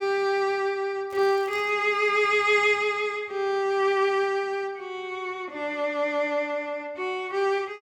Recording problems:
crackling; at 1 s; loose cable, SNR 28 dB

